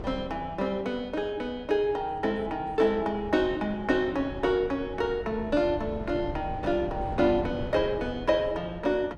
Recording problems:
wind on the microphone; below 320 Hz, SNR 13 dB

